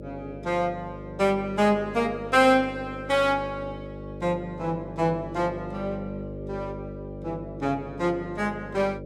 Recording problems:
mains hum; 50 Hz, harmonics up to 600 Hz, SNR 12 dB

